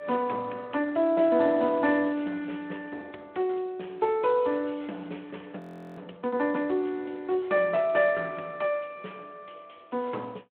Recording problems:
phone line; 240 Hz to 3.3 kHz, Speex
frozen audio; at 5.5 s

